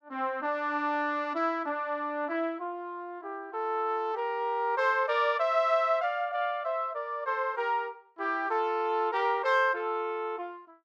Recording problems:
none

